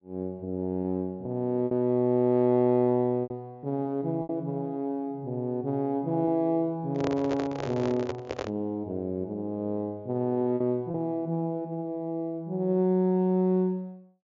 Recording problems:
treble missing; nothing above 7.3 kHz
lost packets; 3% of the sound replaced, filled with repeated pitch periods
handling noise; from 7 to 8.5 s; peak -1 dB vs average level

